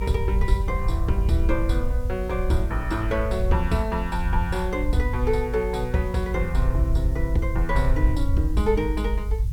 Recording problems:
background hiss; slope +2 dB per octave, SNR 26 dB
rumble; below 70 Hz, SNR 0 dB

